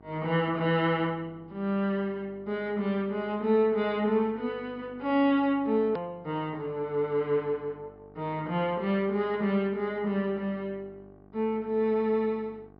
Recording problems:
treble missing; nothing above 5.5 kHz
hum; 50 Hz, harmonics up to 1.6 kHz, SNR 25 dB
hard cut with a click; at 6 s

